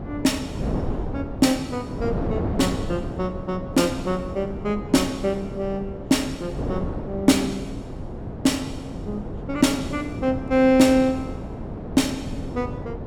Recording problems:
wind noise; below 400 Hz, SNR 8 dB

